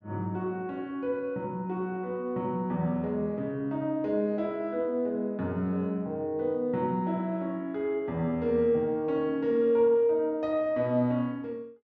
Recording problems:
treble missing; nothing above 8 kHz

